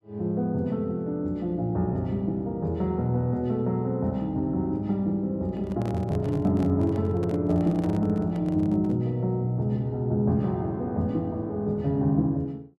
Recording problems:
microphone handling noise; from 5.5 to 9 s; peak -9 dB vs average level

